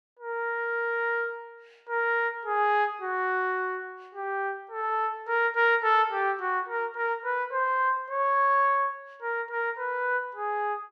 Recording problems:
none

